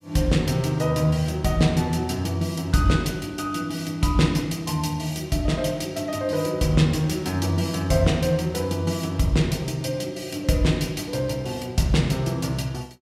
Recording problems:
none

